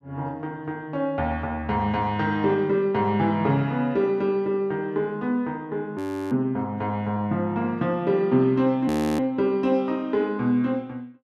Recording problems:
frozen audio; at 6 s and at 9 s

